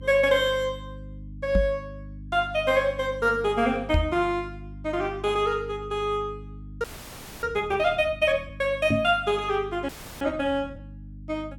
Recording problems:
hum; 50 Hz, harmonics up to 300 Hz, SNR 16 dB
microphone thump; at 1.5 s, at 4 s and at 9 s; peak +4 dB vs average level
audio freezing; at 7 s for 0.5 s and at 10 s

